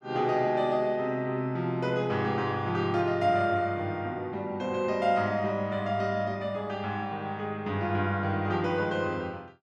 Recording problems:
none

